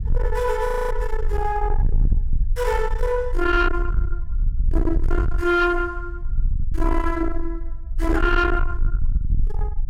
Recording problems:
distortion; soft clipping, signal-to-distortion ratio 7 dB
rumble; below 54 Hz, SNR 3 dB
frozen audio; at 0.5 s

